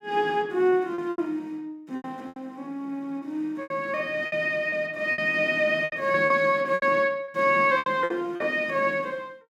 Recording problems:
lost packets; 10% of the sound replaced, filled with repeated pitch periods

